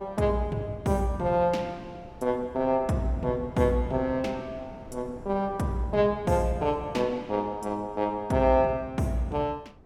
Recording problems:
wind noise; below 410 Hz, SNR 21 dB

